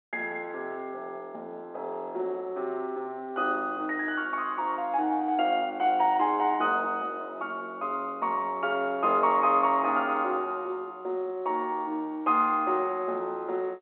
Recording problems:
telephone audio; 260 Hz to 3.8 kHz, G.711

